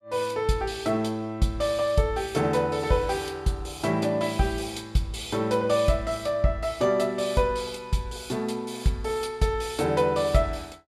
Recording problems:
none

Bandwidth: 15.5 kHz